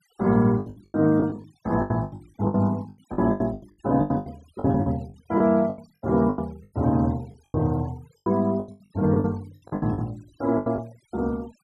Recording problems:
noise reduction artefacts; signal-to-artefact ratio 27 dB
packet loss; 19% of the sound replaced, filled with the last packet

